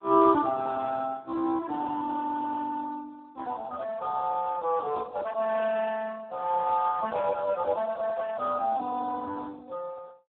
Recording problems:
phone line; 280 Hz to 3.9 kHz, Speex

